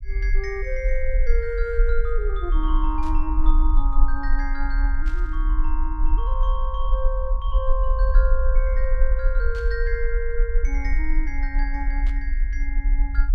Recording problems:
rumble; below 42 Hz, SNR -6 dB
burst of static; 4 times, first at 3 s; peak -11 dB vs average level

